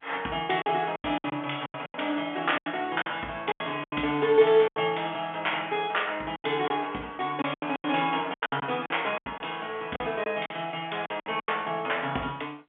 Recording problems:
phone line; 190 Hz to 3.5 kHz, G.711
packet loss; 13% of the sound replaced, filled with silence

